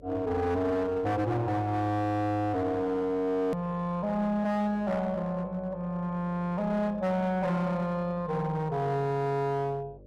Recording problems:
distorted audio; hard clipping, uneven, signal-to-distortion ratio 10 dB
electrical hum; 50 Hz, harmonics up to 600 Hz, SNR 23 dB
click at an edit; at 3.5 s

